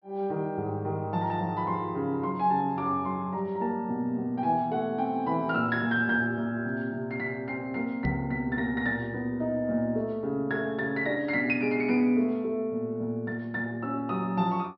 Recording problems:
low-pass filter; nothing above 5.6 kHz
microphone bump; at 8 s; peak +1 dB vs average level

